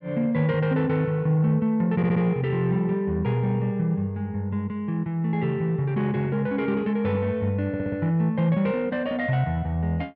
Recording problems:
audio stuttering; at 2 s and at 7.5 s

